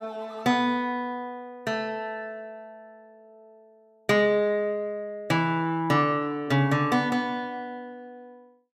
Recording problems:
none

